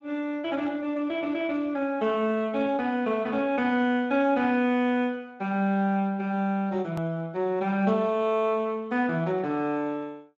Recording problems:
lossy codec; Speex, log-spectral distance 2 dB, nothing above 14.1 kHz
hard cut with a click; at 7 s

